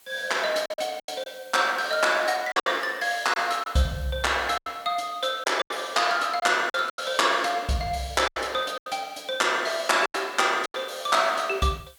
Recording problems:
background hiss; slope 0 dB per octave, SNR 28 dB
packet loss; 8% of the sound replaced, filled with silence

